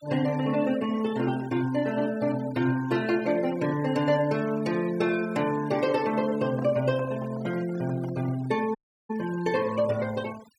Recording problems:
denoising artefacts; signal-to-artefact ratio 18 dB
microphone handling noise; from 6.5 to 8.5 s; peak -10 dB vs average level
dropout; at 9 s

